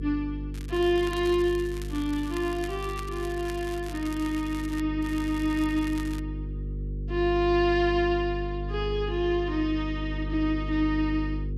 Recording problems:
hum; 50 Hz, harmonics up to 500 Hz, SNR 7 dB
crackling; from 0.5 to 5 s and from 5 to 6 s; loose cable, SNR 18 dB

